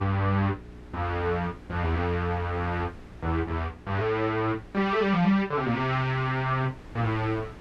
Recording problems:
hum; 60 Hz, harmonics up to 420 Hz, SNR 22 dB
wind on the microphone; below 630 Hz, SNR 22 dB

